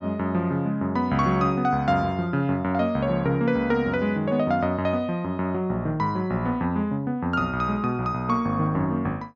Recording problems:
treble missing; nothing above 8 kHz

